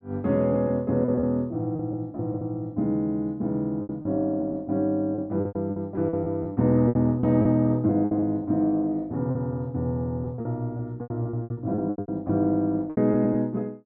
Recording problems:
packet loss; 11% of the sound replaced, filled with repeated pitch periods

